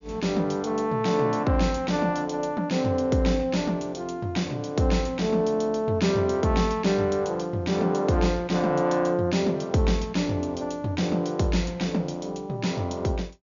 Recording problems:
low-pass filter; nothing above 7 kHz

